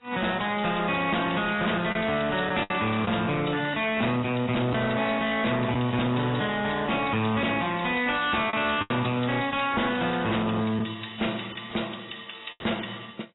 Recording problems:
codec artefacts; AAC, log-spectral distance 8 dB, nothing above 3.8 kHz
distorted audio; hard clipping, signal-to-distortion ratio 7 dB
lost packets; 3% of the sound replaced, filled with the last packet

